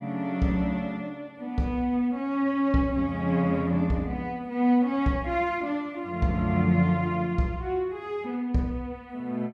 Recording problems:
none

